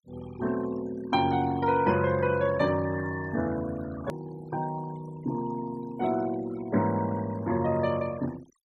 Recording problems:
denoising artefacts; signal-to-artefact ratio 18 dB
hard cut with a click; at 4 s

